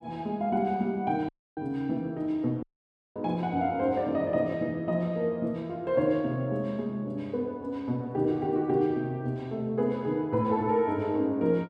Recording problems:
dropout; at 1.5 s and at 2.5 s for 0.5 s

